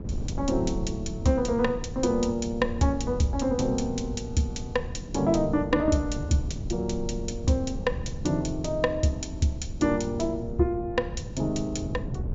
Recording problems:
treble cut off; nothing above 8 kHz
wind on the microphone; below 160 Hz, SNR 8 dB

